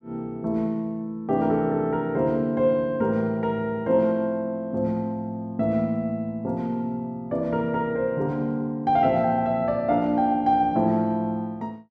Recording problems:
none

